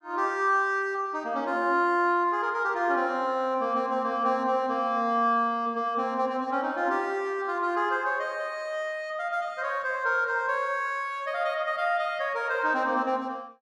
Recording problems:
none

